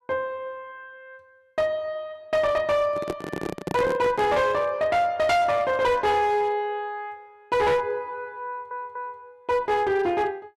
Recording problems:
distorted audio; hard clipping, signal-to-distortion ratio 11 dB
microphone handling noise; from 3 to 4.5 s; peak -1 dB vs average level
stutter; at 8.5 s

